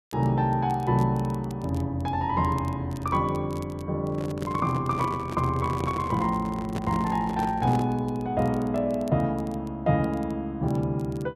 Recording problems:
crackling; vinyl, SNR 28 dB
microphone handling noise; from 4 to 8 s; peak -2 dB vs average level

